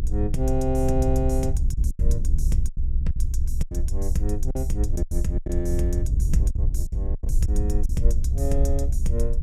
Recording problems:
low-frequency rumble; below 64 Hz, strongest tone 20 Hz, SNR -3 dB
packet loss; 9% of the sound replaced, filled with silence

